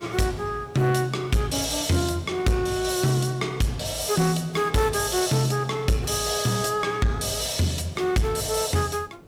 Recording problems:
distortion; soft clipping, signal-to-distortion ratio 10 dB
hiss; slope -8 dB per octave, SNR 26 dB

